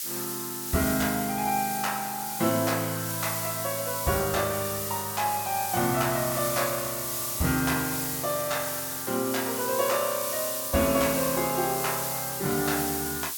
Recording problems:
hiss; slope +6 dB per octave, SNR 2 dB

